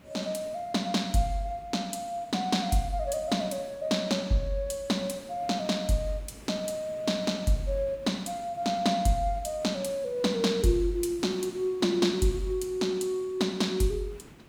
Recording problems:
background hiss; SNR 22 dB

